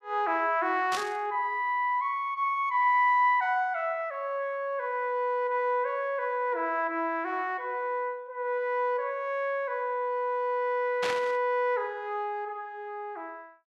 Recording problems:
burst of static; at 1 s and at 11 s; peak -1 dB vs average level

